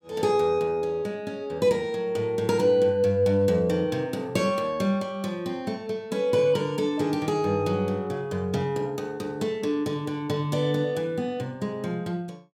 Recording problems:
none

